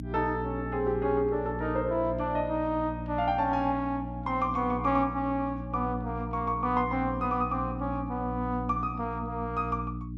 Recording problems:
mains hum; 60 Hz, harmonics up to 300 Hz, SNR 7 dB

